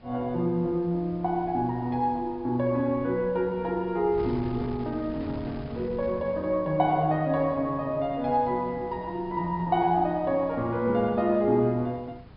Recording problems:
low-pass filter; nothing above 5.5 kHz
wind on the microphone; below 290 Hz, SNR 18 dB

